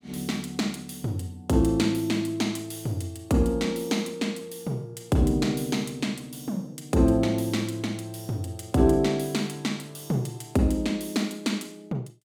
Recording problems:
none

